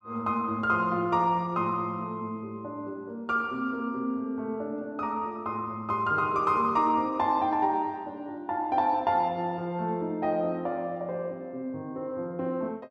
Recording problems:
none

